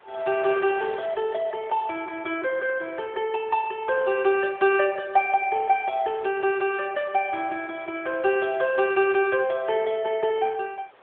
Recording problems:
phone line; 240 Hz to 3.5 kHz, AMR-NB
wind noise; below 1.9 kHz, SNR 24 dB

